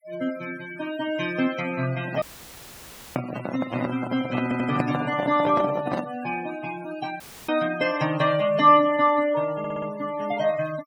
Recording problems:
denoising artefacts; signal-to-artefact ratio 15 dB
handling noise; from 2 to 6 s; peak +2 dB vs average level
dropout; at 2 s for 1 s and at 7 s; filled with static
stutter; at 4.5 s and at 9.5 s

